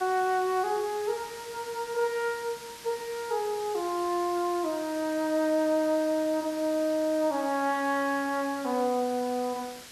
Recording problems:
hiss; slope 0 dB per octave, SNR 15 dB

